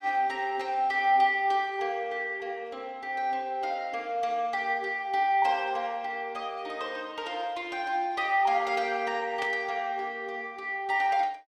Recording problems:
burst of static; at 9.5 s; peak -5 dB vs average level

